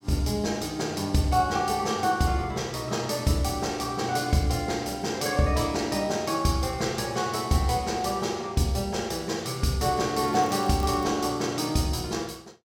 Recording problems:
crackling; at 10 s; loose cable, SNR 22 dB

